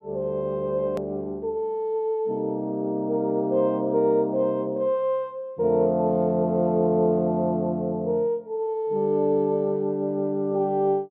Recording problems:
click at an edit; at 1 s

